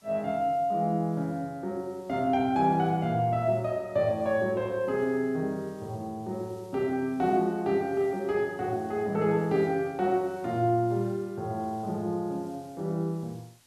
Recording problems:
hiss; slope -1 dB per octave, SNR 30 dB

